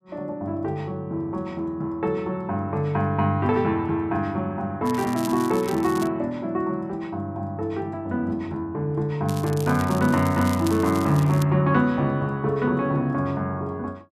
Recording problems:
crackle; from 5 to 6 s and from 9.5 to 11 s; loose cable, SNR 16 dB

